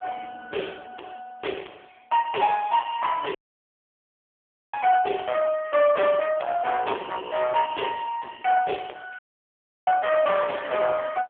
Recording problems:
telephone audio; 320 Hz to 3.4 kHz, AMR-NB
distortion; hard clipping, signal-to-distortion ratio 9 dB
dropout; at 3.5 s for 1.5 s and at 9 s for 0.5 s

